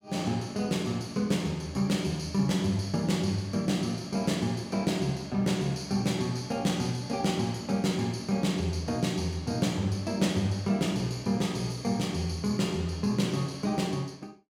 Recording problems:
none

